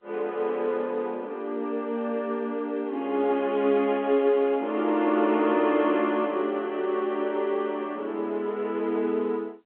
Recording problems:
telephone audio; 240 Hz to 3.5 kHz, G.711

